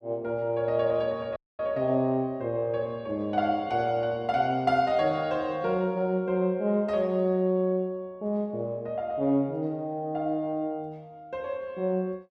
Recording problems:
dropout; at 1.5 s

